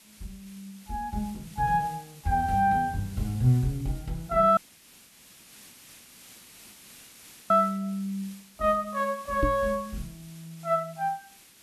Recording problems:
hiss; SNR 22 dB
dropout; at 4.5 s for 3 s
knock on the microphone; at 9.5 s; peak +3 dB vs average level

